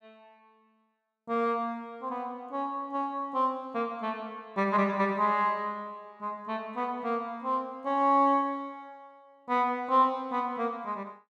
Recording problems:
none

